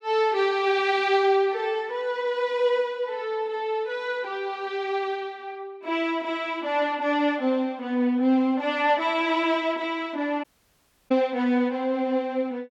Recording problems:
dropout; at 10 s for 0.5 s

